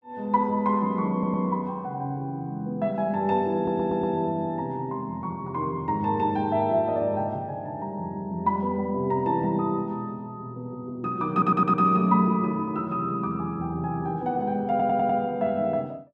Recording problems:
audio stuttering; 4 times, first at 1 s

